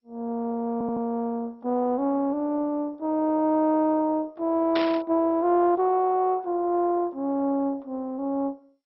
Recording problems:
codec artefacts; MP2, log-spectral distance 2 dB
audio stuttering; at 0.5 s
burst of static; at 5 s; peak -2 dB vs average level

